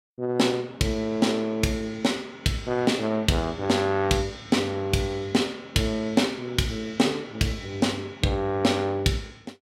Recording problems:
none

